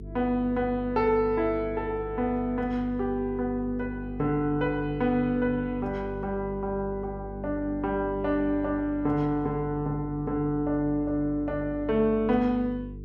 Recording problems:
hum; 50 Hz, harmonics up to 450 Hz, SNR 13 dB

